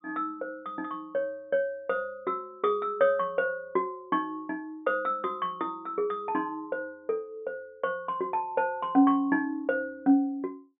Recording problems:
low-pass filter; nothing above 4 kHz

